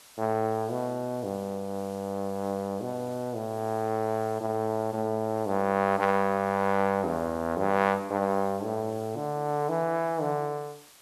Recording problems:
background hiss; slope 0 dB per octave, SNR 23 dB

